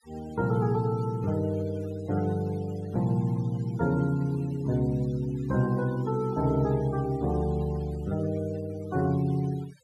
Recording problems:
noise reduction artefacts; signal-to-artefact ratio 22 dB

